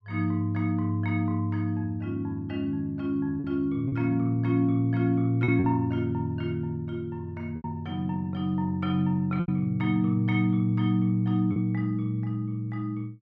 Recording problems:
lost packets; 3% of the sound replaced, filled with repeated pitch periods

